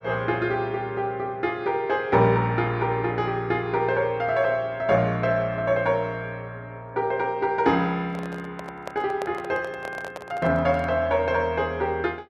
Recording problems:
microphone handling noise; from 8 to 11 s; peak -5 dB vs average level

